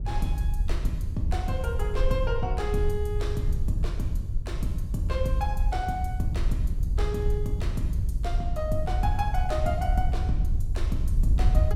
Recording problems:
wind on the microphone; below 68 Hz, SNR -3 dB

